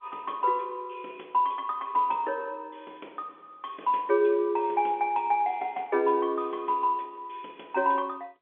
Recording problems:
telephone audio; 300 Hz to 3.4 kHz, G.711

